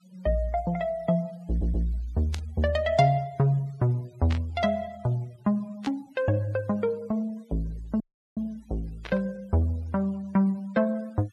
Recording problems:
denoising artefacts; signal-to-artefact ratio 28 dB
stutter; at 1.5 s
static burst; 4 times, first at 2.5 s; peak -5 dB vs average level
audio cutting out; at 8 s

